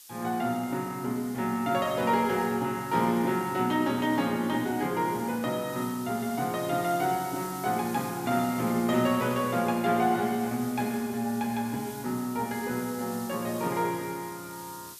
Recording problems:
hiss; SNR 16 dB

